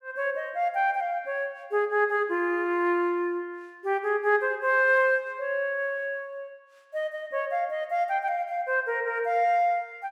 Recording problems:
none

